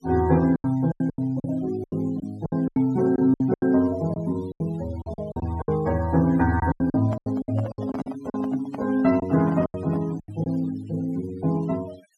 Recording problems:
denoising artefacts; signal-to-artefact ratio 23 dB
packet loss; 14% of the sound replaced, filled with silence
microphone handling noise; from 7 to 10 s; peak -5 dB vs average level

